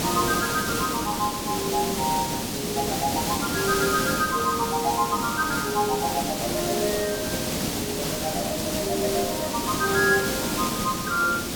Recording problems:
hiss; SNR 1 dB

